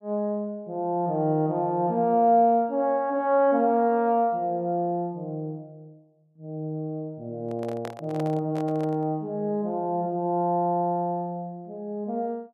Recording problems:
handling noise; from 7.5 to 9 s; peak -7 dB vs average level

